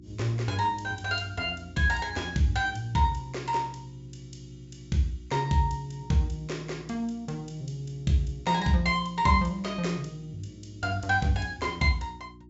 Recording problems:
treble cut off; nothing above 8 kHz
hum; 60 Hz, harmonics up to 360 Hz, SNR 21 dB

